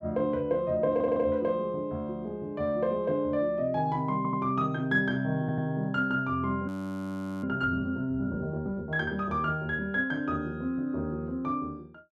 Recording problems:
audio stuttering; at 1 s, at 4 s and at 5.5 s
audio freezing; at 6.5 s for 1 s

